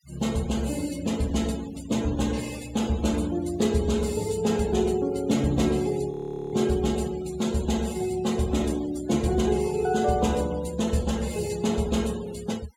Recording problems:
denoising artefacts; signal-to-artefact ratio 18 dB
frozen audio; at 6 s

